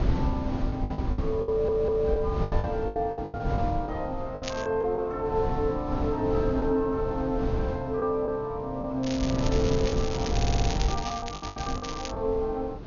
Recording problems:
low-pass filter; nothing above 6.8 kHz
wind noise; below 170 Hz, SNR 3 dB
packet loss; 10% of the sound replaced, filled with the last packet
audio stuttering; at 1.5 s and at 10 s
crackling; at 4.5 s and from 9 to 12 s; loose cable, SNR 9 dB

